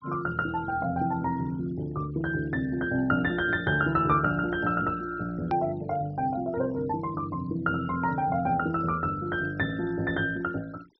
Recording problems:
treble cut off; nothing above 5.7 kHz
denoising artefacts; signal-to-artefact ratio 24 dB
hard cut with a click; at 5.5 s

